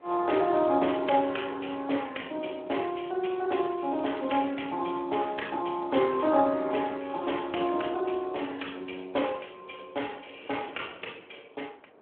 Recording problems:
phone line; 300 Hz to 3.2 kHz, Speex
wind noise; below 850 Hz, SNR 24 dB

